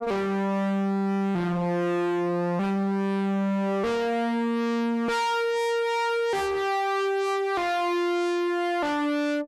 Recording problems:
distortion; hard clipping, uneven, signal-to-distortion ratio 5 dB

